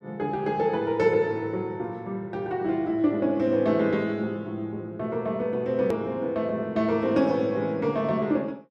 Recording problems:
click at an edit; at 6 s

